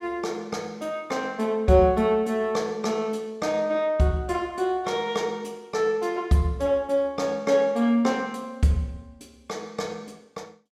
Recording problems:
none

